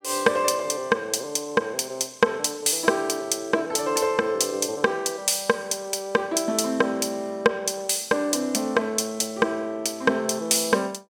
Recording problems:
none

